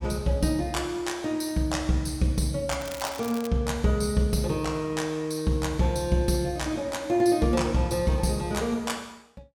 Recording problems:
crackling; at 2.5 s; loose cable, SNR 15 dB

